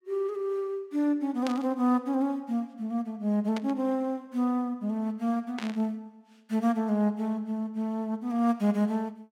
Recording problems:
burst of static; at 1.5 s, at 3.5 s and at 5.5 s; peak -4 dB vs average level

